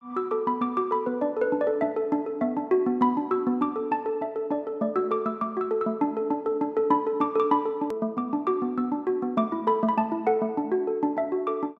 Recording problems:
click at an edit; at 8 s

